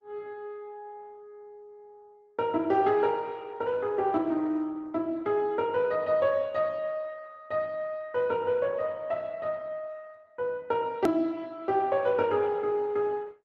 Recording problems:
lossy codec; Opus, log-spectral distance 2 dB, nothing above 13.1 kHz
click at an edit; at 11 s

